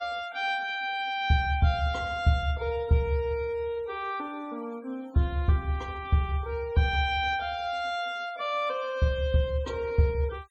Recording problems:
noise reduction artefacts; signal-to-artefact ratio 25 dB

